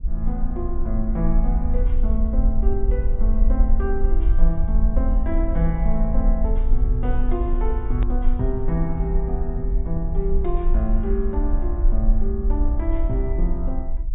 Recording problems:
treble cut off; nothing above 4 kHz
low-frequency rumble; below 48 Hz, strongest tone 22 Hz, SNR -4 dB
hard cut with a click; at 8 s

